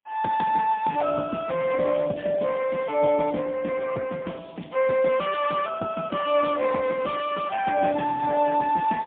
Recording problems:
phone line; 240 Hz to 3.5 kHz, AMR-NB, then MP3
crackle; from 1 to 3.5 s, from 4.5 to 5.5 s and from 6.5 to 8.5 s; loose cable, SNR 27 dB

